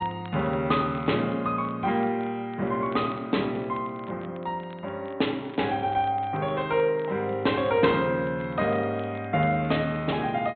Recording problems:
low-pass filter; nothing above 4 kHz
crackling; vinyl, SNR 27 dB

